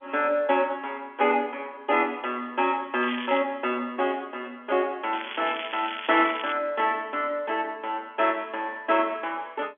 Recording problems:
telephone audio; 260 Hz to 3.4 kHz, G.711
crackle; at 3 s and from 5 to 6.5 s; loose cable, SNR 10 dB

